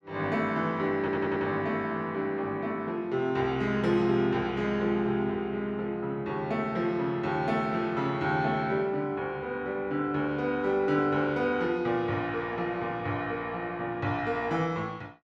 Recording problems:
audio stuttering; at 1 s

